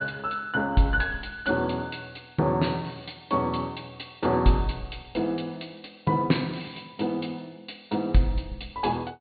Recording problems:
treble missing; nothing above 4.4 kHz

